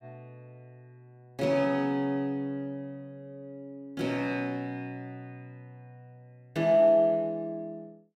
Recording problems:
none

